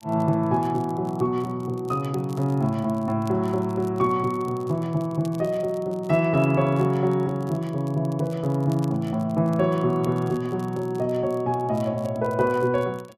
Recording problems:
crackle; vinyl, SNR 28 dB

